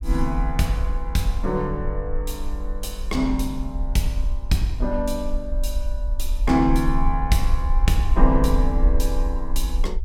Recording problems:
rumble; below 46 Hz, strongest tone 22 Hz, SNR 2 dB

